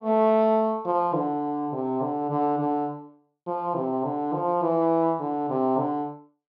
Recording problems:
none

